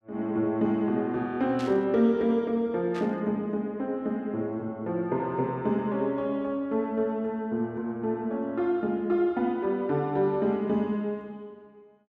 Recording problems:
static burst; at 1.5 s and at 3 s; peak -10 dB vs average level

